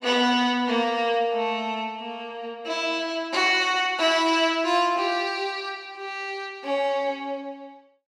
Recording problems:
none

